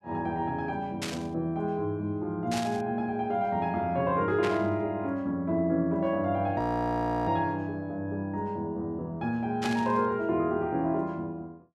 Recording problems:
static burst; 4 times, first at 1 s; peak -1 dB vs average level
audio freezing; at 6.5 s for 0.5 s

